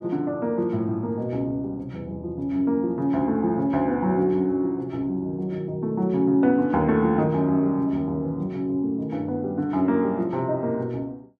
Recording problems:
none

